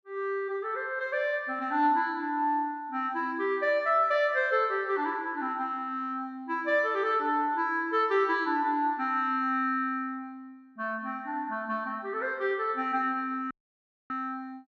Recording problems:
dropout; at 14 s for 0.5 s

